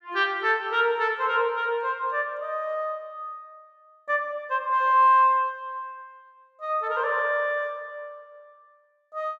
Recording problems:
none

